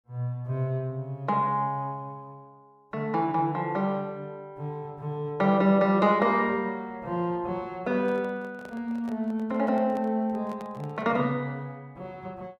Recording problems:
microphone handling noise; from 8 to 11 s; peak -12 dB vs average level

